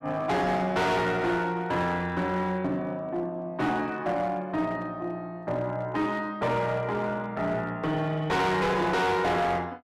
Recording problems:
distorted audio; hard clipping, uneven, signal-to-distortion ratio 8 dB

